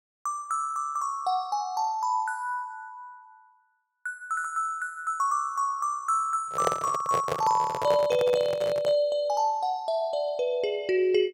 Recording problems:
microphone handling noise; from 6.5 to 9 s; peak +4 dB vs average level

